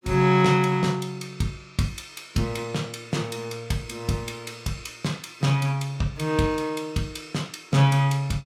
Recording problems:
none

